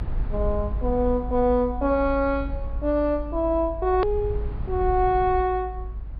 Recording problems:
treble cut off; nothing above 5 kHz
rumble; below 60 Hz, strongest tone 52 Hz, SNR 8 dB
hard cut with a click; at 4 s

